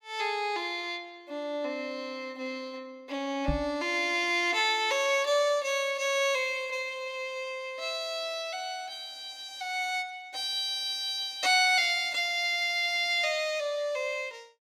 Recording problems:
microphone bump; at 3.5 s; peak +1 dB vs average level

